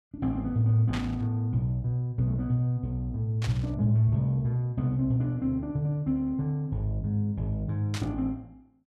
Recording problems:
static burst; at 1 s, at 3.5 s and at 8 s; peak -5 dB vs average level

